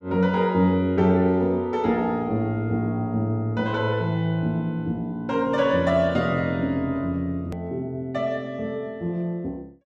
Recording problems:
edit click; at 7.5 s

